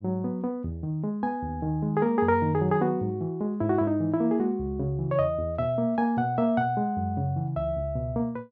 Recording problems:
treble cut off; nothing above 7.5 kHz

